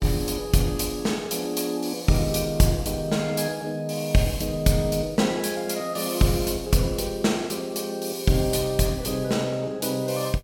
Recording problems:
none

